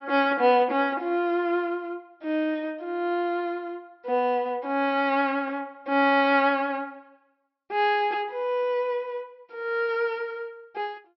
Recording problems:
treble cut off; nothing above 5.7 kHz

